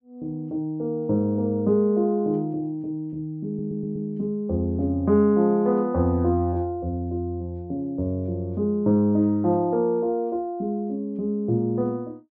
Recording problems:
audio stuttering; at 3.5 s

